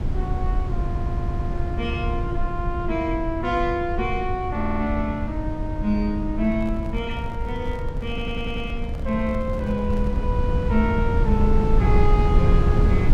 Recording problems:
rumble; below 98 Hz, SNR -1 dB
audio stuttering; at 1 s, at 4.5 s and at 8 s
microphone handling noise; from 6.5 to 10 s; peak -11 dB vs average level

